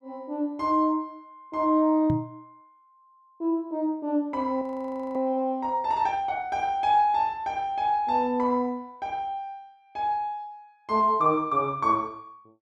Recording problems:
knock on the microphone; at 2 s; peak +1 dB vs average level
frozen audio; at 4.5 s for 0.5 s

